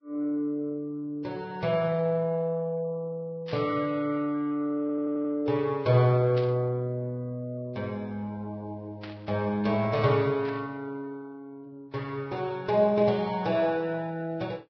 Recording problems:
codec artefacts; Vorbis, log-spectral distance 2 dB, nothing above 5.2 kHz
static burst; 4 times, first at 3.5 s; peak -10 dB vs average level
audio stuttering; at 5 s

